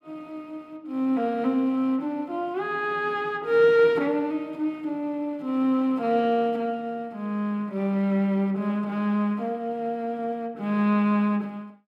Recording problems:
none

